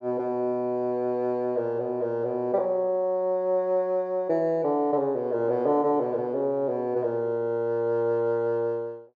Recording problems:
none

